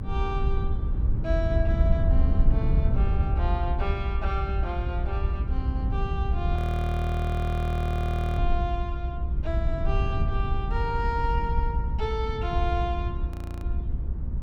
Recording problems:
rumble; below 80 Hz, SNR -5 dB
frozen audio; at 6.5 s for 2 s and at 13 s

